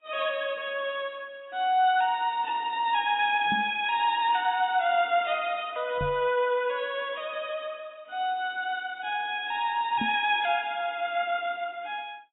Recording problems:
codec artefacts; AAC, log-spectral distance 3 dB, nothing above 3.4 kHz
knock on the microphone; at 3.5 s, at 6 s and at 10 s; peak -2 dB vs average level

